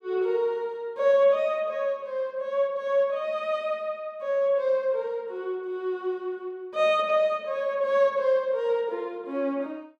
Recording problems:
none

